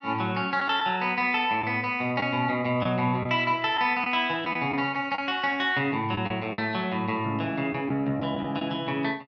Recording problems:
lost packets; 4% of the sound replaced, filled with the last packet

